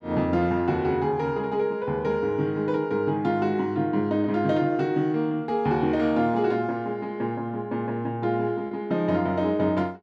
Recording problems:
packet loss; 0.4% of the sound replaced, filled with repeated pitch periods

